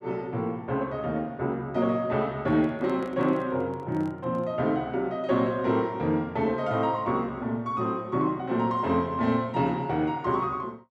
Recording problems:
handling noise; from 2.5 to 4.5 s; peak -12 dB vs average level

